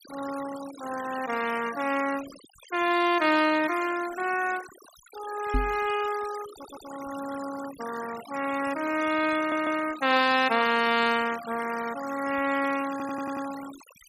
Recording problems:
noise reduction artefacts; signal-to-artefact ratio 13 dB
microphone thump; at 5.5 s; peak +2 dB vs average level
stutter; at 6.5 s, at 9.5 s and at 13 s

